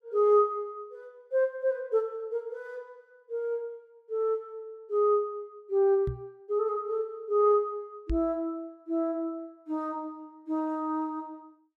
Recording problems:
knock on the microphone; at 6 s and at 8 s; peak -1 dB vs average level

